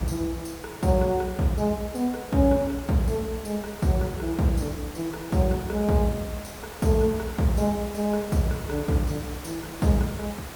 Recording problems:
background hiss; slope -4 dB per octave, SNR 14 dB

